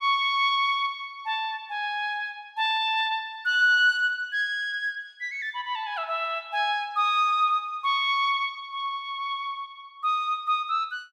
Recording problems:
none

